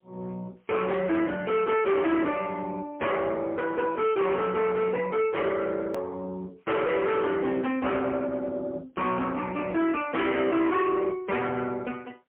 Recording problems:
phone line; 190 Hz to 3.3 kHz, AMR-NB, then MP3
distortion; hard clipping, signal-to-distortion ratio 8 dB
click at an edit; at 6 s

